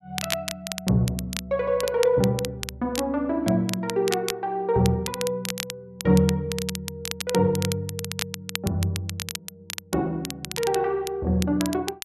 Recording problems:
crackle; vinyl, SNR 8 dB

